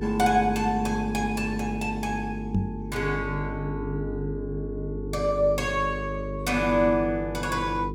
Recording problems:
mains hum; 50 Hz, harmonics up to 450 Hz, SNR 7 dB
knock on the microphone; at 2.5 s; peak +5 dB vs average level

